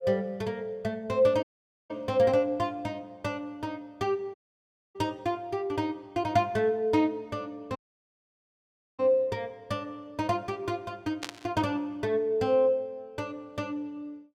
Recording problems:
audio cutting out; at 1.5 s, at 4.5 s for 0.5 s and at 8 s for 1 s
burst of static; at 11 s; peak -1 dB vs average level

